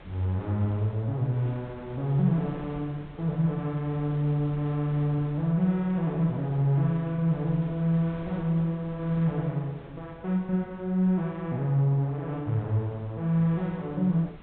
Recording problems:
treble missing; nothing above 4 kHz
wind noise; below 620 Hz, SNR 20 dB

